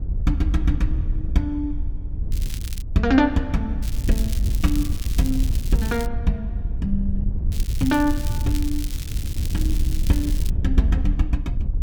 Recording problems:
wind on the microphone; below 74 Hz, SNR 2 dB
crackling; at 2.5 s, from 4 to 6 s and from 7.5 to 11 s; loose cable, SNR 12 dB

